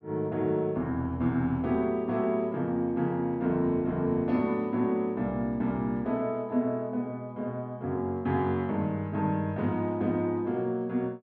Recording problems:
none

